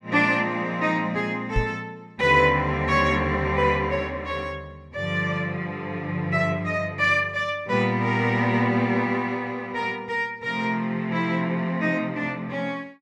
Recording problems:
microphone thump; at 1.5 s; peak +2 dB vs average level

